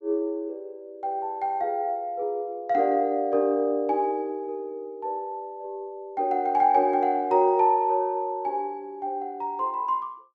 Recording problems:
none

